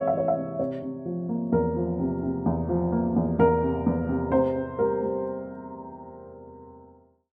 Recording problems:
none

